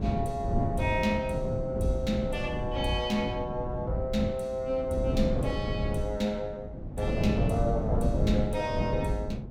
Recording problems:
wind noise; below 220 Hz, SNR 2 dB

